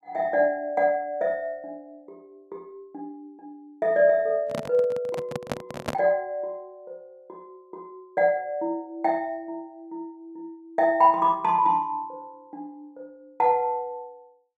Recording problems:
handling noise; from 4.5 to 6 s; peak -1 dB vs average level

